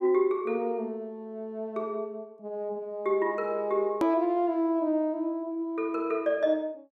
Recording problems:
hard cut with a click; at 4 s

